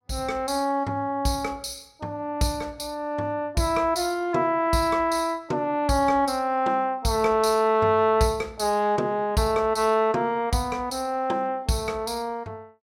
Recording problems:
none

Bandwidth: 16 kHz